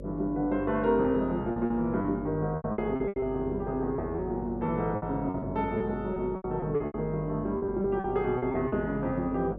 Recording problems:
hum; 50 Hz, harmonics up to 600 Hz, SNR 12 dB
lost packets; 12% of the sound replaced, filled with repeated pitch periods

